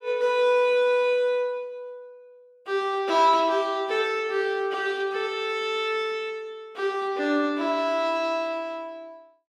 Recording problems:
none

